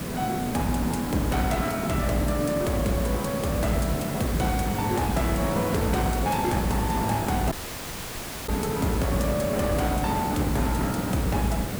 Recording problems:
distortion; hard clipping, signal-to-distortion ratio 10 dB
hiss; SNR 3 dB
audio cutting out; at 7.5 s for 1 s

